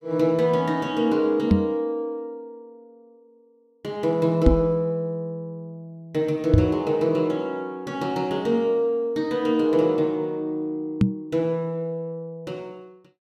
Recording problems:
knock on the microphone; 4 times, first at 1.5 s; peak +10 dB vs average level

